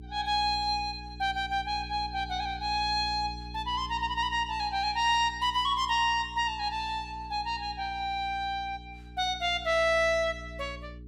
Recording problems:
hum; 60 Hz, harmonics up to 420 Hz, SNR 16 dB

